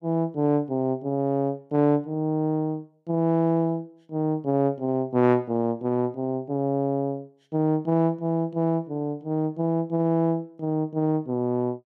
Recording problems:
none

